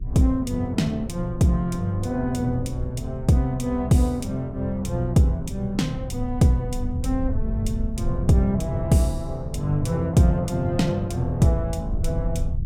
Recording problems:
hum; 50 Hz, harmonics up to 400 Hz, SNR 29 dB
low-frequency rumble; below 84 Hz, SNR 10 dB

